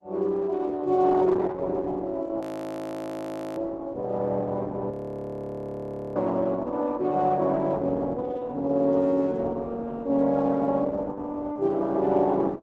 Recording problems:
lossy compression; Opus, log-spectral distance 2 dB, nothing above 13.1 kHz
frozen audio; at 2.5 s for 1 s and at 5 s for 1 s

